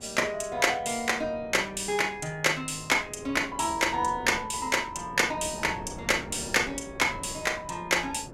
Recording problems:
wind on the microphone; below 530 Hz, SNR 17 dB

